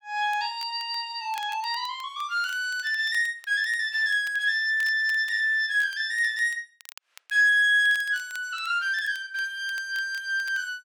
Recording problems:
crackle; vinyl, SNR 25 dB

